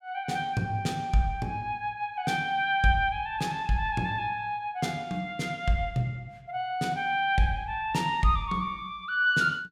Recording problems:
none

